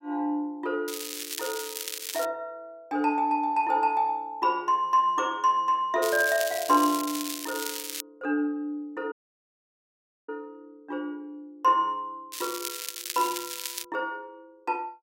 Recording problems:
crackling; from 1 to 2.5 s, from 6 to 8 s and from 12 to 14 s; loose cable, SNR 7 dB
dropout; at 9 s for 1 s

